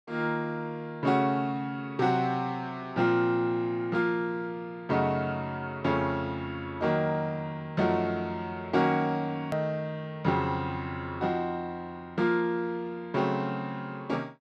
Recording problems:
hard cut with a click; at 9.5 s

